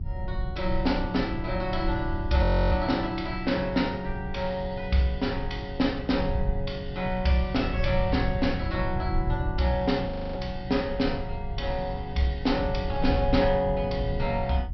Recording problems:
treble missing; nothing above 5.5 kHz
lossy compression; G.722, log-spectral distance 2 dB
hum; 60 Hz, harmonics up to 720 Hz, SNR 21 dB
rumble; below 92 Hz, SNR 7 dB
frozen audio; at 2.5 s and at 10 s

